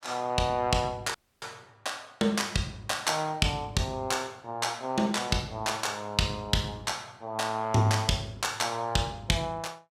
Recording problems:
dropout; at 1 s

